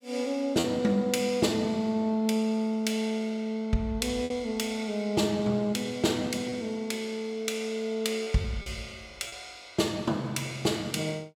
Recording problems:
lost packets; 2% of the sound replaced, filled with repeated pitch periods

